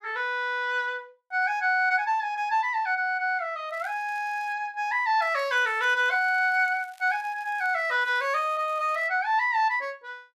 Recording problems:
crackle; at 3.5 s and from 5 to 9 s; loose cable, SNR 30 dB

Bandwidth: 14 kHz